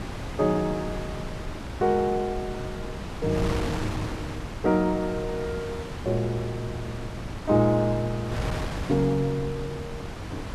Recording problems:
wind on the microphone; below 800 Hz, SNR 7 dB

